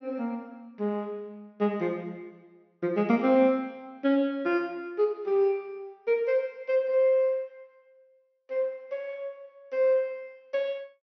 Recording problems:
treble missing; nothing above 6 kHz

